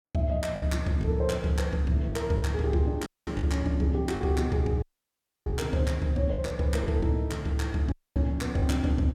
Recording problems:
packet loss; 5% of the sound replaced, filled with the last packet
dropout; at 3 s, at 5 s for 0.5 s and at 8 s

